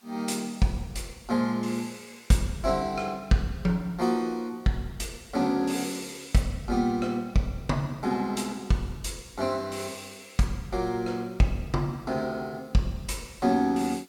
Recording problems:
background hiss; slope 0 dB per octave, SNR 30 dB

